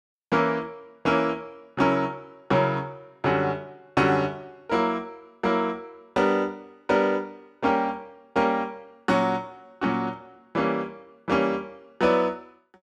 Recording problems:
none

